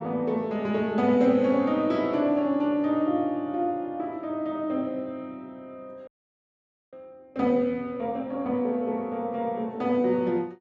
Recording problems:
audio freezing; at 6 s for 1 s

